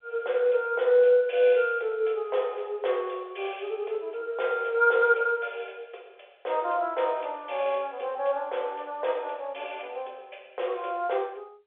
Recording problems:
phone line; 370 Hz to 3.6 kHz, G.711

